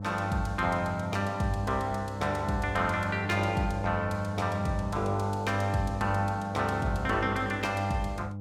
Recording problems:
electrical hum; 50 Hz, harmonics up to 600 Hz, SNR 6 dB

